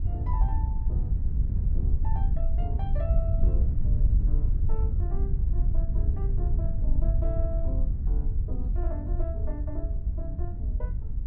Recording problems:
wind on the microphone; below 72 Hz, SNR -14 dB

